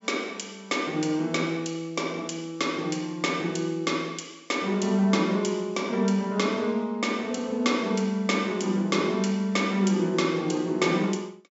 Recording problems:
treble missing; nothing above 8 kHz

